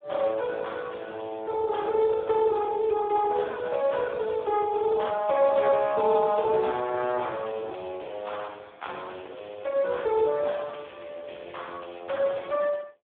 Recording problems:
telephone audio; 260 Hz to 3.6 kHz, Speex

